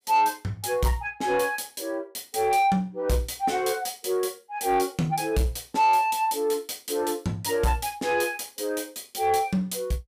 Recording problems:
distorted audio; soft clipping, signal-to-distortion ratio 11 dB

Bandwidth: 15.5 kHz